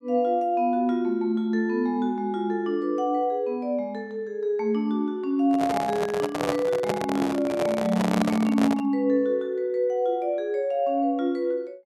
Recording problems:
handling noise; from 5.5 to 9 s; peak +2 dB vs average level

